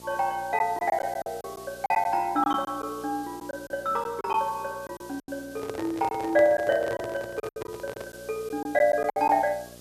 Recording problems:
electrical hum; 60 Hz, harmonics up to 1.9 kHz, SNR 23 dB
background hiss; SNR 22 dB
lost packets; 9% of the sound replaced, filled with silence
microphone handling noise; from 5.5 to 8 s; peak -3 dB vs average level

